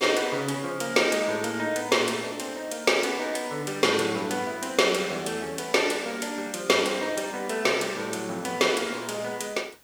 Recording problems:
background hiss; slope -2 dB per octave, SNR 28 dB

